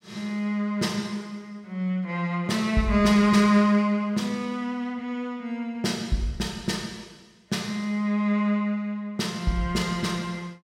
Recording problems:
none

